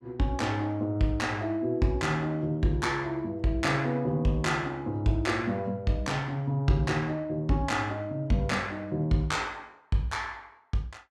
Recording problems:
none

